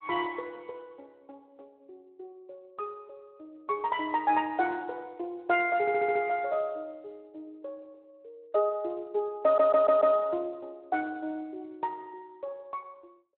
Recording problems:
phone line; 320 Hz to 3.9 kHz, Speex
audio stuttering; at 6 s and at 9.5 s

